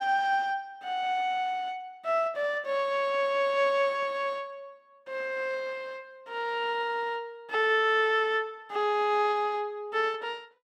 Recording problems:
none

